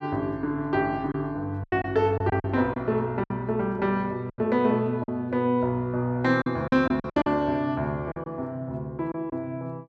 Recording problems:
lost packets; 8% of the sound replaced, filled with silence

